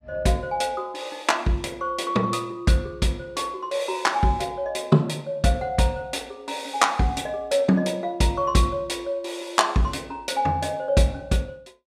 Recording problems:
none

